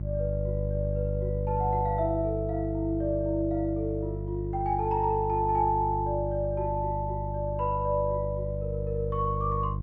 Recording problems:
mains hum; 50 Hz, harmonics up to 350 Hz, SNR 4 dB

